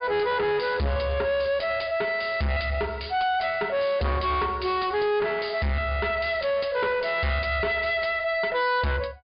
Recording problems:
treble cut off; nothing above 4.9 kHz
distortion; soft clipping, signal-to-distortion ratio 6 dB

